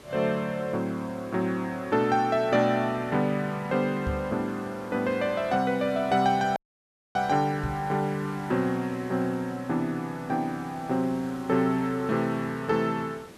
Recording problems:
hiss; slope -5 dB per octave, SNR 20 dB
microphone thump; at 4 s and at 7.5 s; peak -2 dB vs average level
audio cutting out; at 6.5 s for 0.5 s

